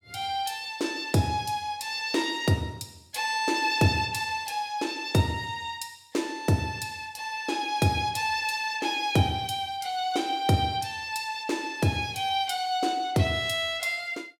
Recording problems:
none

